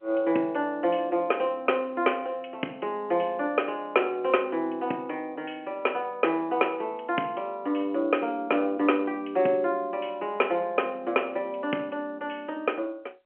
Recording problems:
telephone audio; 220 Hz to 3.2 kHz, G.711

